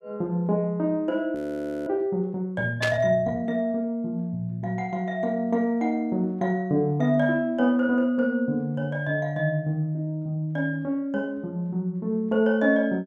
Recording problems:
frozen audio; at 1.5 s for 0.5 s
static burst; at 3 s; peak +1 dB vs average level

